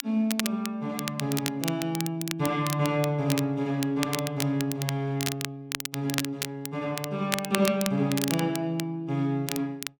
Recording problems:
crackling; vinyl, SNR 6 dB

